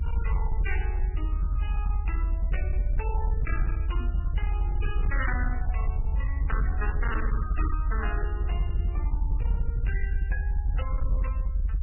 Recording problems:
lossy compression; MP3, log-spectral distance 2 dB, nothing above 2.9 kHz
distorted audio; hard clipping, signal-to-distortion ratio 12 dB
low-frequency rumble; below 70 Hz, SNR -9 dB
microphone bump; at 4 s; peak +1 dB vs average level

